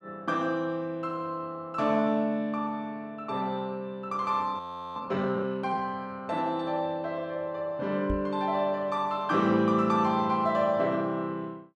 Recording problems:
frozen audio; at 4.5 s
microphone thump; at 8 s; peak 0 dB vs average level

